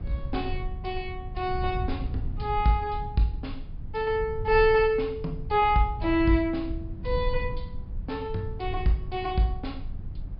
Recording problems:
treble missing; nothing above 5.5 kHz
rumble; below 92 Hz, SNR 9 dB

